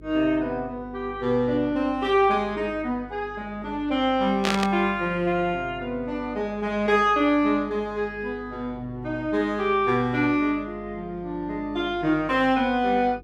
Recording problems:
hum; 50 Hz, harmonics up to 500 Hz, SNR 21 dB
burst of static; at 4.5 s; peak +3 dB vs average level

